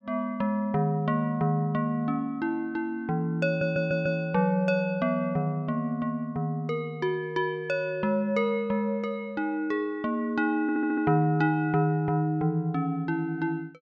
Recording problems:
stutter; at 3.5 s and at 11 s

